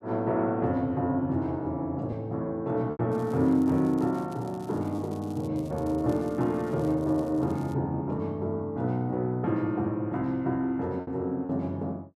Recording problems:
lost packets; 1.7% of the sound replaced, filled with repeated pitch periods
crackle; from 3 to 5.5 s and from 5.5 to 7.5 s; loose cable, SNR 27 dB

